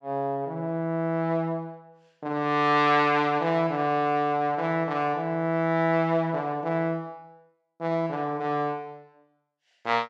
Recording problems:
none

